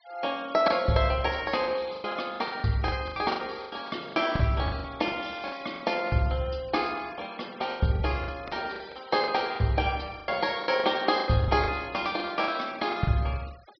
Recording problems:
treble cut off; nothing above 5.5 kHz
noise reduction artefacts; signal-to-artefact ratio 22 dB
packet loss; 13% of the sound replaced, filled with the last packet

